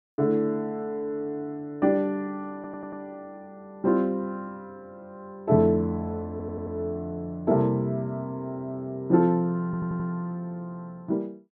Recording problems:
stutter; at 2.5 s, at 6.5 s and at 9.5 s

